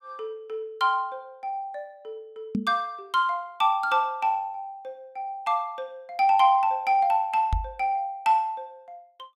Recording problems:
knock on the microphone; at 2.5 s and at 7.5 s; peak +2 dB vs average level

